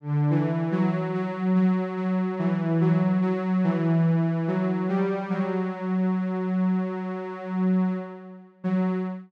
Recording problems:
none

